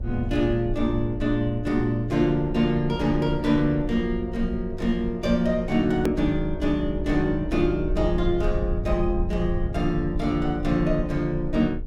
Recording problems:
electrical hum; 60 Hz, harmonics up to 540 Hz, SNR 27 dB
low-frequency rumble; below 72 Hz, SNR 9 dB
click at an edit; at 6 s

